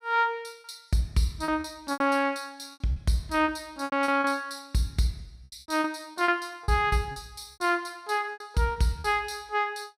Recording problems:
packet loss; 10% of the sound replaced, filled with repeated pitch periods

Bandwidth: 15.5 kHz